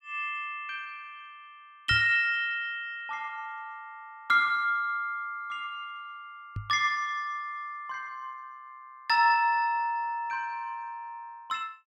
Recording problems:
knock on the microphone; at 2 s and at 6.5 s; peak -3 dB vs average level

